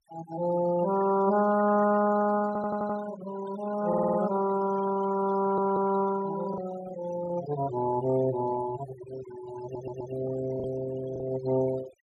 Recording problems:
noise reduction artefacts; signal-to-artefact ratio 14 dB
packet loss; 1.5% of the sound replaced, filled with the last packet
stutter; 4 times, first at 2.5 s

